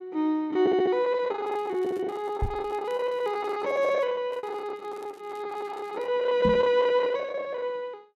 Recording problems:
packet loss; 17% of the sound replaced, filled with the last packet
crackling; from 1.5 to 4 s and from 4.5 to 6 s; loose cable, SNR 30 dB
microphone thump; at 2.5 s and at 6.5 s; peak +3 dB vs average level

